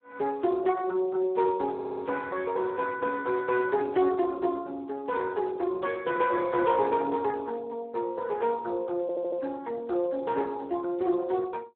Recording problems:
phone line; 280 Hz to 3.1 kHz, Speex
stutter; at 1.5 s and at 9 s

